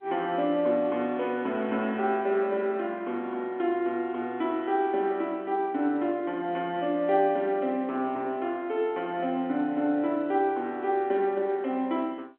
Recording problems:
telephone audio; 220 Hz to 3.7 kHz, G.711

